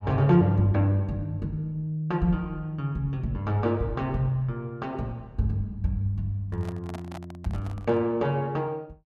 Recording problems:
handling noise; from 6.5 to 8 s; peak -8 dB vs average level

